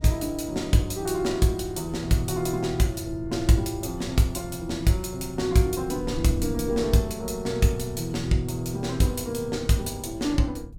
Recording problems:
wind on the microphone; below 120 Hz, SNR 15 dB

